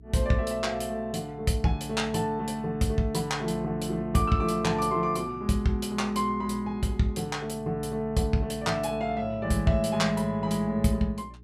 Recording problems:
electrical hum; 60 Hz, harmonics up to 420 Hz, SNR 19 dB

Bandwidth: 15 kHz